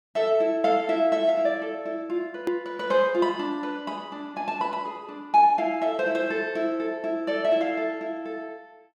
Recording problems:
click at an edit; at 2.5 s

